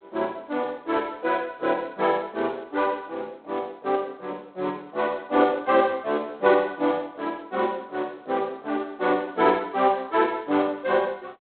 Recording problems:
phone line; 220 Hz to 3.9 kHz, G.726

